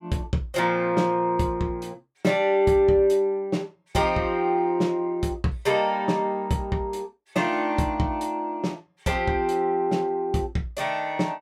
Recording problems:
none

